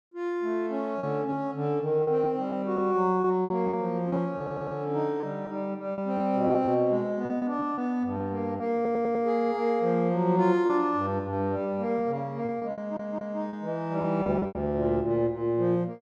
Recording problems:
lost packets; 7% of the sound replaced, filled with repeated pitch periods
audio stuttering; at 4.5 s, at 9 s and at 13 s

